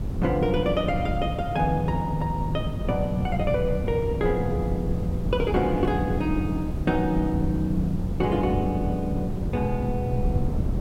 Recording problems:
background hiss; slope -5 dB per octave, SNR 23 dB
wind noise; below 170 Hz, SNR 3 dB

